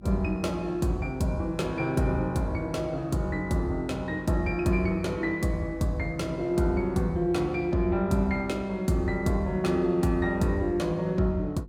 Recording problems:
electrical hum; 50 Hz, harmonics up to 350 Hz, SNR 23 dB

